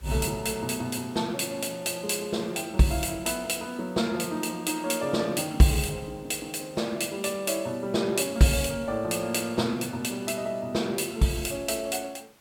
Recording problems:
background hiss; slope -3 dB per octave, SNR 28 dB

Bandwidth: 17 kHz